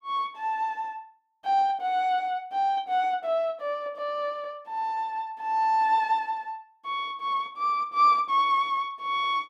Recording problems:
none

